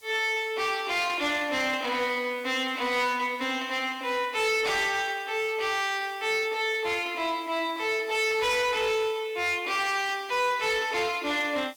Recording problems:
distortion; hard clipping, uneven, signal-to-distortion ratio 11 dB
hiss; SNR 27 dB

